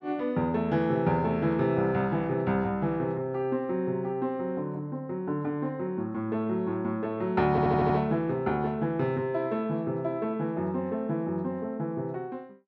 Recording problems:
audio stuttering; at 7.5 s

